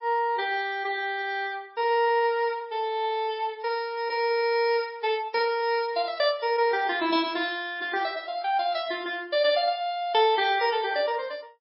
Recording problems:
lossy codec; MP3, log-spectral distance 2 dB, nothing above 5.3 kHz

